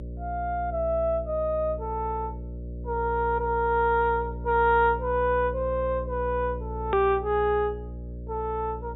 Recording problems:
treble missing; nothing above 4 kHz
hum; 60 Hz, harmonics up to 600 Hz, SNR 10 dB
edit click; at 7 s

